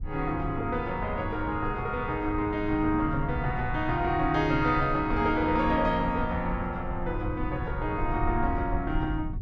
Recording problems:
rumble; below 100 Hz, SNR 8 dB

